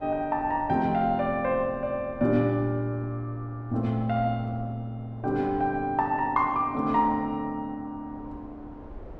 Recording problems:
wind noise; below 480 Hz, SNR 21 dB

